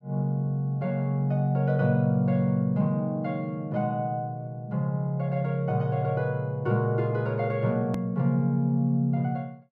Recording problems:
edit click; at 8 s

